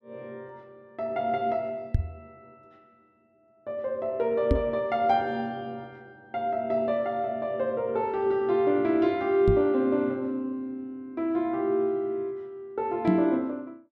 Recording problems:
knock on the microphone; 4 times, first at 2 s; peak +6 dB vs average level

